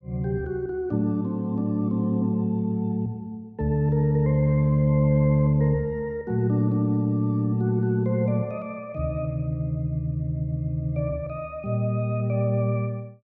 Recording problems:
none

